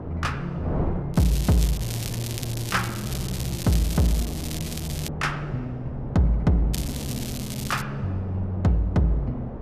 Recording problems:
wind on the microphone; below 420 Hz, SNR 9 dB
crackling; from 1 to 5 s and from 6.5 to 8 s; loose cable, SNR 9 dB

